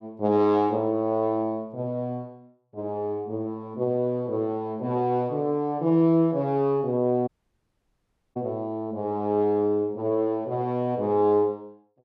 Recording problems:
dropout; at 7.5 s for 1 s

